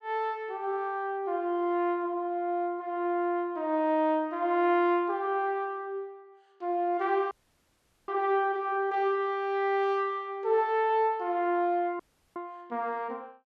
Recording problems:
dropout; at 7.5 s for 1 s and at 12 s

